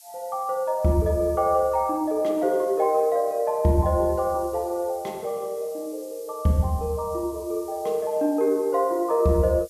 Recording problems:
hiss; slope +7 dB per octave, SNR 23 dB

